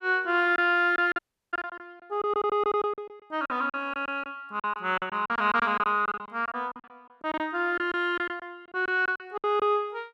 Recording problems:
lost packets; 14% of the sound replaced, filled with silence
audio cutting out; at 1 s

